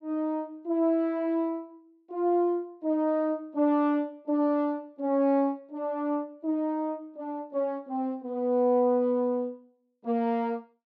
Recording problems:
none

